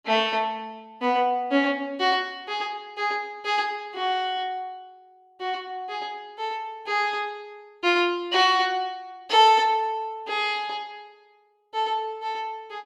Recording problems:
none

